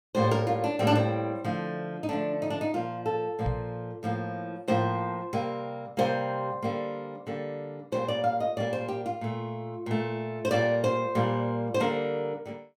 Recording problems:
microphone bump; at 3.5 s; peak +2 dB vs average level

